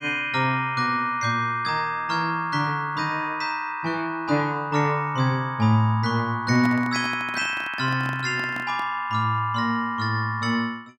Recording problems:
microphone handling noise; from 6.5 to 9 s; peak -5 dB vs average level

